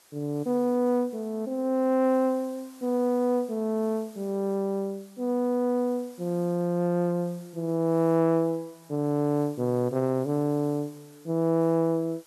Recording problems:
background hiss; slope -1 dB per octave, SNR 27 dB

